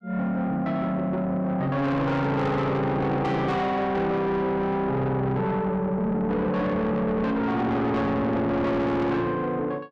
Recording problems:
distortion; soft clipping, signal-to-distortion ratio 7 dB

